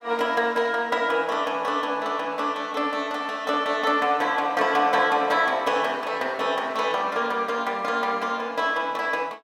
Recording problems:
none

